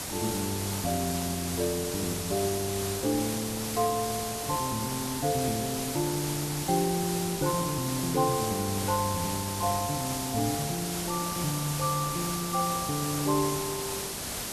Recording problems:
hiss; slope -2 dB per octave, SNR 2 dB

